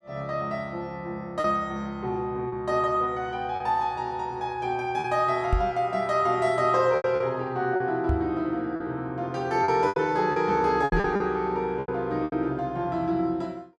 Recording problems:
lost packets; 6% of the sound replaced, filled with repeated pitch periods
microphone thump; at 5.5 s, at 8 s and at 11 s; peak +5 dB vs average level

